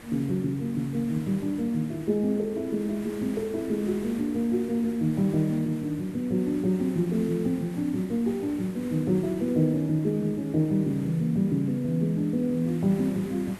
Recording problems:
hiss; SNR 19 dB

